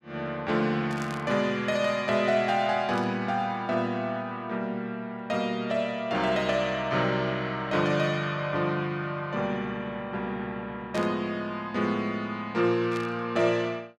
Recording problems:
static burst; 4 times, first at 1 s; peak -9 dB vs average level

